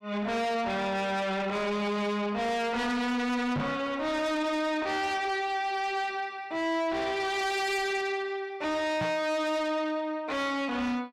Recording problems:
distorted audio; soft clipping, signal-to-distortion ratio 6 dB
microphone bump; at 3.5 s and at 9 s; peak +2 dB vs average level

